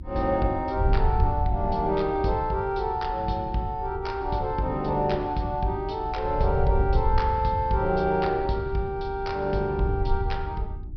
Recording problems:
low-pass filter; nothing above 5.5 kHz
electrical hum; 60 Hz, harmonics up to 360 Hz, SNR 20 dB
wind noise; below 86 Hz, SNR 6 dB

